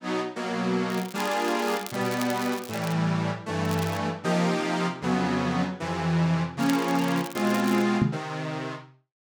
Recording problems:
crackle; from 1 to 3 s, at 3.5 s and from 6.5 to 8 s; loose cable, SNR 14 dB
knock on the microphone; at 8 s; peak +6 dB vs average level

